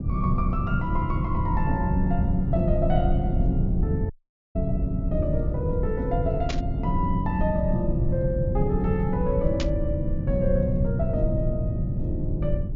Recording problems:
low-pass filter; nothing above 7.2 kHz
low-frequency rumble; below 140 Hz, SNR -1 dB
dropout; at 4 s
static burst; at 6.5 s and at 9.5 s; peak 0 dB vs average level

